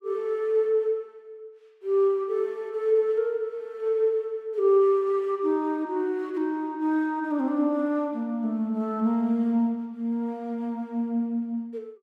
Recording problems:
none

